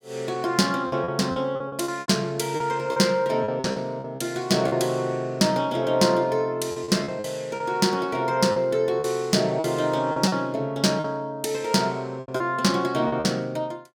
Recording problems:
lost packets; 9% of the sound replaced, filled with repeated pitch periods

